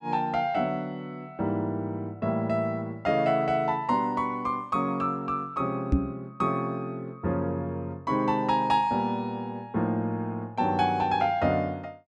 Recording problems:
microphone thump; at 6 s; peak +8 dB vs average level

